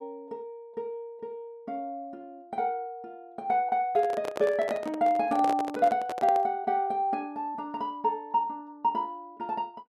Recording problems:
microphone handling noise; from 4 to 6.5 s; peak -1 dB vs average level

